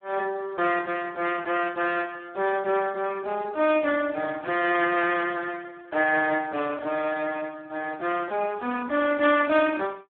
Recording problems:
telephone audio; 240 Hz to 3.2 kHz, Speex

